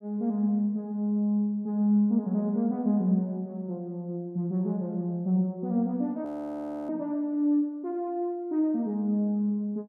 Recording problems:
audio freezing; at 6.5 s for 0.5 s

